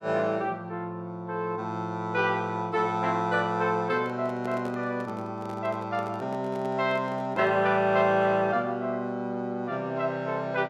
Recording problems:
handling noise; from 4 to 7.5 s; peak -8 dB vs average level

